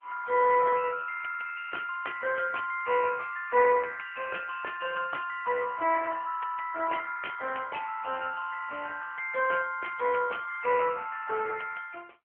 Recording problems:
telephone audio; 370 Hz to 3.1 kHz, AMR-NB

